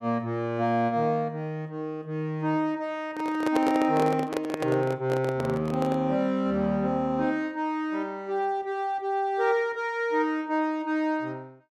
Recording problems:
handling noise; from 3 to 6 s; peak +2 dB vs average level

